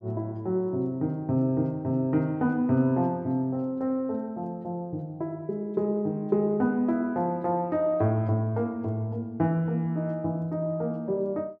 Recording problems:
none

